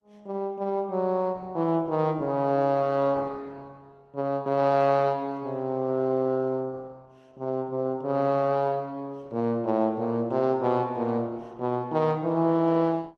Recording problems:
lossy compression; Opus, log-spectral distance 2 dB

